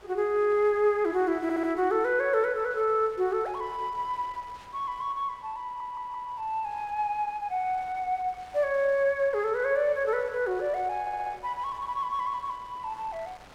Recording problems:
wind noise; below 2.4 kHz, SNR 24 dB
stutter; at 1.5 s, at 5.5 s and at 11 s

